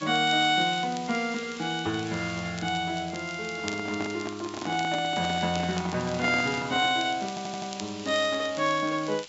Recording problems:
treble cut off; nothing above 8 kHz
background hiss; SNR 15 dB
crackle; vinyl, SNR 18 dB
microphone handling noise; from 3.5 to 7 s; peak -3 dB vs average level
stutter; at 7.5 s

